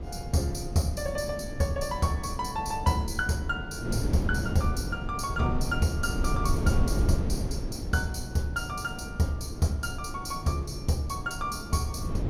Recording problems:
wind on the microphone; below 190 Hz, SNR 4 dB

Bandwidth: 16.5 kHz